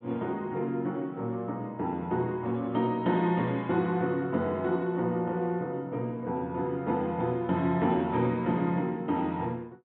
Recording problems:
treble cut off; nothing above 4 kHz

